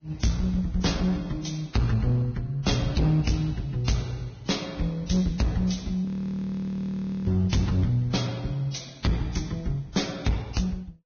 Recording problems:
lossy codec; Vorbis, log-spectral distance 3 dB, nothing above 6.5 kHz
distorted audio; hard clipping, uneven, signal-to-distortion ratio 7 dB
audio freezing; at 6 s for 1 s

